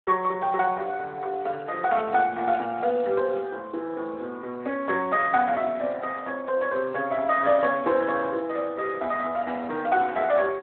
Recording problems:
phone line; 280 Hz to 3.3 kHz, Speex

